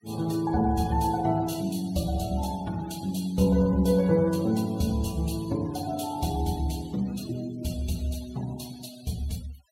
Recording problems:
noise reduction artefacts; signal-to-artefact ratio 20 dB

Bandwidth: 16 kHz